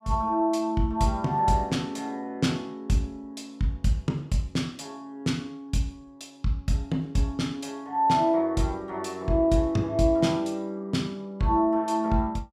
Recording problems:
none

